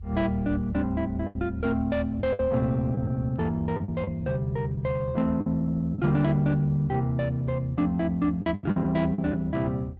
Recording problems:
codec artefacts; Opus, log-spectral distance 2 dB
rumble; below 80 Hz, strongest tone 78 Hz, SNR 11 dB
lost packets; 6% of the sound replaced, filled with the last packet

